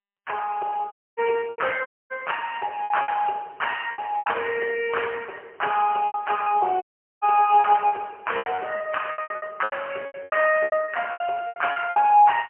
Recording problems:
phone line; 320 Hz to 3.1 kHz, AMR-NB, then MP3
lost packets; 13% of the sound replaced, filled with repeated pitch periods
dropout; at 1 s, at 2 s and at 7 s

